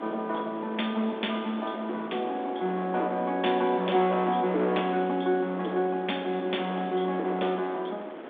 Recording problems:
telephone audio; 260 Hz to 3.6 kHz, G.726
distortion; hard clipping, signal-to-distortion ratio 14 dB
wind noise; below 950 Hz, SNR 13 dB

